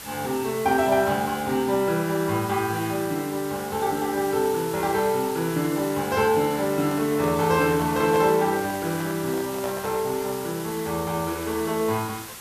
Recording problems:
hiss; slope -1 dB per octave, SNR 13 dB
handling noise; from 6.5 to 10 s; peak -6 dB vs average level

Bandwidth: 14.5 kHz